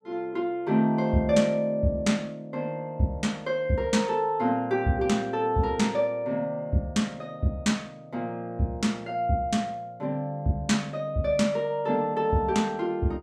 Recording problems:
none

